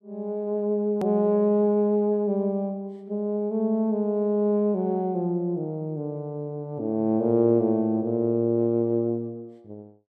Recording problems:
hard cut with a click; at 1 s

